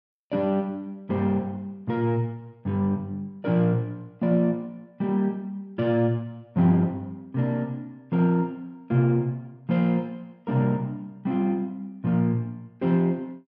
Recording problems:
none

